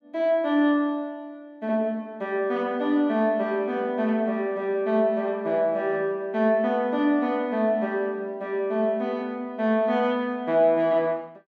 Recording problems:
none

